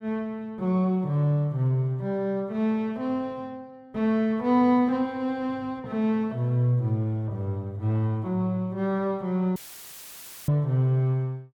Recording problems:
audio cutting out; at 9.5 s for 1 s; filled with static

